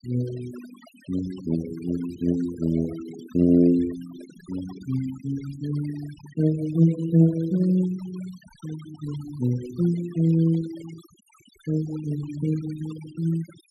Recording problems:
noise reduction artefacts; signal-to-artefact ratio 20 dB

